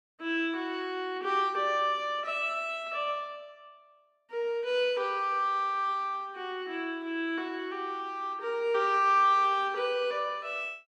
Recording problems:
none

